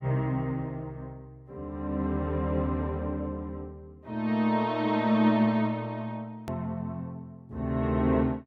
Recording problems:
edit click; at 6.5 s

